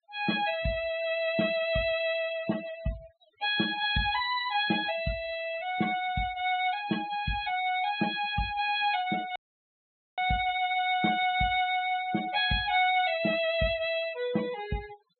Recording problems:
low-pass filter; nothing above 4.1 kHz
noise reduction artefacts; signal-to-artefact ratio 15 dB
audio cutting out; at 9.5 s for 1 s

